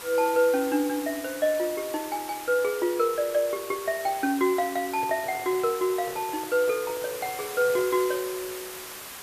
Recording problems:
hiss; slope -1 dB per octave, SNR 11 dB
handling noise; from 5 to 8 s; peak -10 dB vs average level

